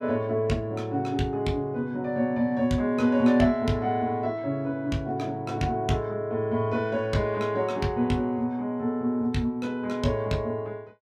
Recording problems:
none

